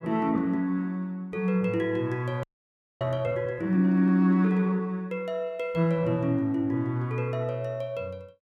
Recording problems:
audio freezing; at 2.5 s for 0.5 s

